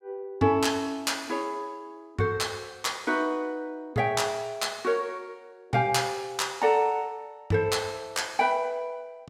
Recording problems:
none

